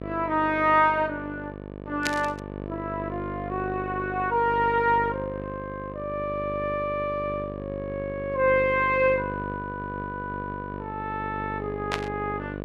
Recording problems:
hum; 50 Hz, harmonics up to 1.8 kHz, SNR 9 dB
static burst; at 2 s and at 12 s; peak +3 dB vs average level

